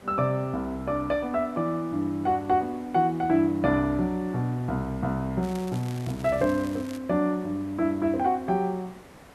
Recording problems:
background hiss; slope -6 dB per octave, SNR 22 dB
crackling; from 5.5 to 7 s; loose cable, SNR 20 dB

